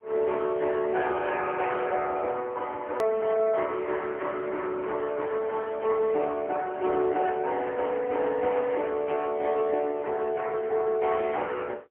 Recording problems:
phone line; 320 Hz to 3.3 kHz, AMR-NB, then MP3
hard cut with a click; at 3 s

